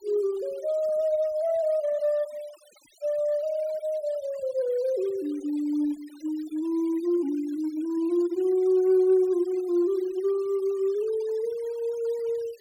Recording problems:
denoising artefacts; signal-to-artefact ratio 27 dB

